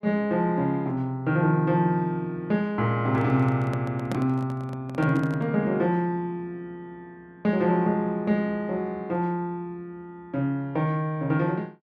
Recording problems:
microphone handling noise; from 3 to 5.5 s; peak -2 dB vs average level

